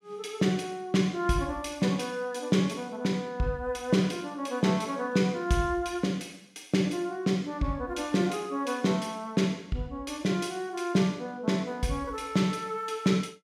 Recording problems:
none

